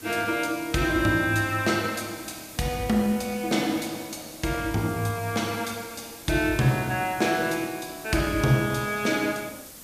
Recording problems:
hiss; SNR 16 dB

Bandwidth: 14.5 kHz